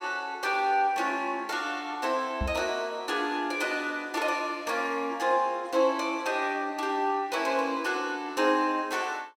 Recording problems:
microphone bump; at 2.5 s; peak 0 dB vs average level

